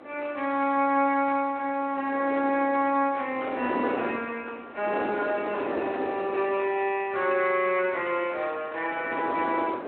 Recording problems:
phone line; 220 Hz to 3.2 kHz, Speex
wind on the microphone; below 760 Hz, SNR 7 dB

